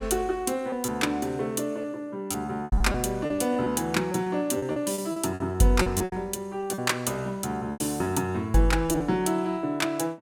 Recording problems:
packet loss; 10% of the sound replaced, filled with repeated pitch periods

